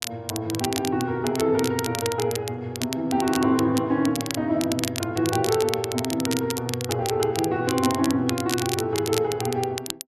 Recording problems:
crackling; vinyl, SNR 8 dB

